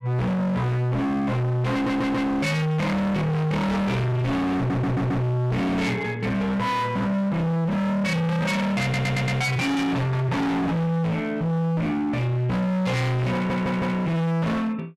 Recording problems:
distortion; hard clipping, signal-to-distortion ratio 6 dB
audio stuttering; 4 times, first at 1.5 s

